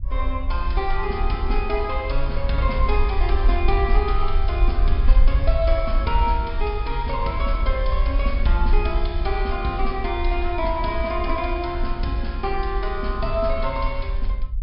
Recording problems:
treble cut off; nothing above 5.5 kHz
low-frequency rumble; below 54 Hz, SNR -1 dB

